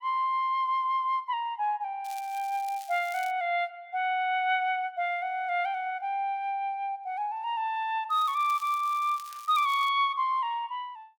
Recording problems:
crackling; from 2 to 3.5 s and from 8 to 10 s; loose cable, SNR 20 dB

